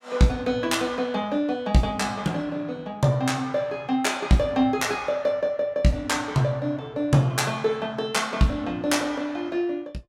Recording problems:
none

